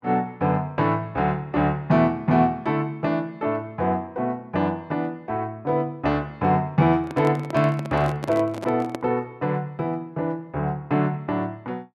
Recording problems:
handling noise; from 7 to 9 s; peak -3 dB vs average level

